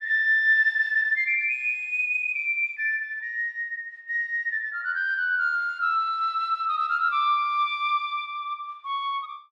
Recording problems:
none

